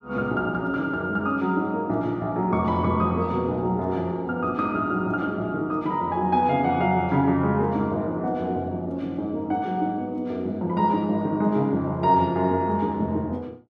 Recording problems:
none

